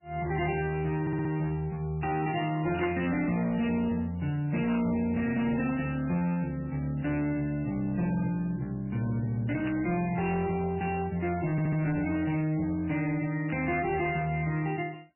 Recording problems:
lossy compression; MP3, log-spectral distance 3 dB, nothing above 2.4 kHz
distorted audio; soft clipping, signal-to-distortion ratio 12 dB
audio stuttering; at 1 s and at 12 s
static burst; 4 times, first at 3 s; peak -3 dB vs average level

